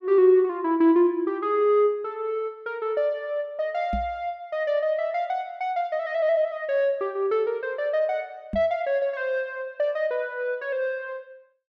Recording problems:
microphone bump; at 4 s and at 8.5 s; peak -2 dB vs average level

